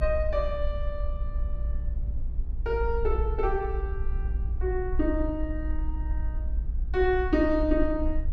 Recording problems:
low-frequency rumble; below 56 Hz, SNR 3 dB

